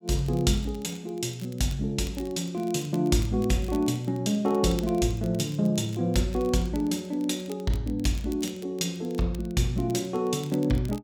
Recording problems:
crackling; vinyl, SNR 22 dB

